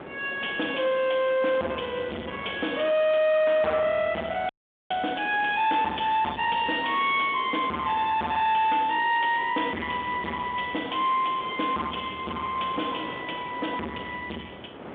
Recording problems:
telephone audio; 190 Hz to 3.7 kHz, G.726
distorted audio; soft clipping, signal-to-distortion ratio 6 dB
wind noise; below 1.3 kHz, SNR 18 dB
crackling; from 1 to 2 s, from 6 to 7 s and from 9 to 13 s; loose cable, SNR 27 dB
audio freezing; at 4.5 s

